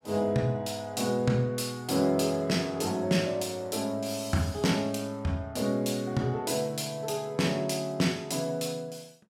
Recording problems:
none

